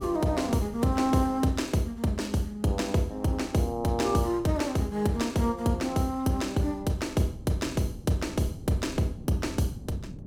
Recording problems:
wind on the microphone; below 220 Hz, SNR 17 dB

